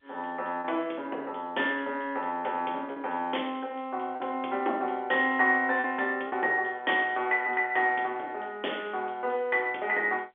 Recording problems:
phone line; 320 Hz to 3.5 kHz, G.711
lost packets; 1.9% of the sound replaced, filled with repeated pitch periods

